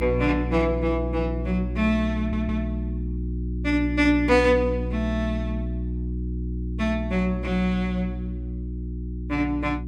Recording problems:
hum; 60 Hz, harmonics up to 360 Hz, SNR 5 dB
stutter; at 2 s

